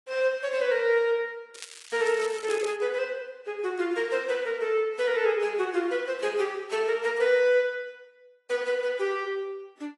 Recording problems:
codec artefacts; AAC, log-spectral distance 3 dB, nothing above 10.7 kHz
crackling; from 1.5 to 2.5 s; loose cable, SNR 16 dB

